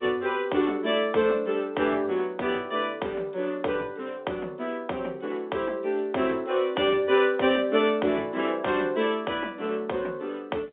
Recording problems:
telephone audio; 260 Hz to 3.6 kHz, G.711

